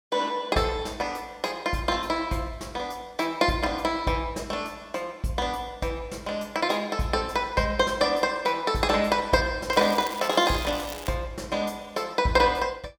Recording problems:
crackle; from 9.5 to 11 s; loose cable, SNR 14 dB

